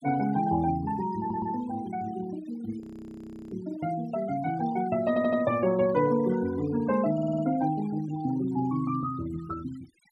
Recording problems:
noise reduction artefacts; signal-to-artefact ratio 17 dB
stutter; at 1 s, at 5 s and at 7 s
audio freezing; at 3 s for 0.5 s

